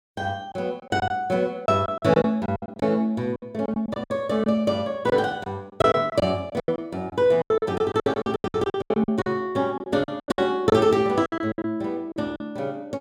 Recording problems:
lost packets; 16% of the sound replaced, filled with silence

